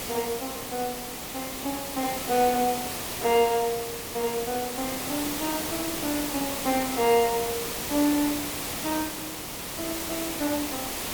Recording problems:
background hiss; slope -3 dB per octave, SNR 3 dB

